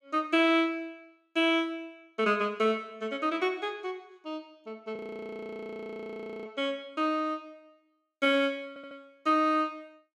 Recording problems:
audio freezing; at 5 s for 1.5 s
audio stuttering; at 8.5 s

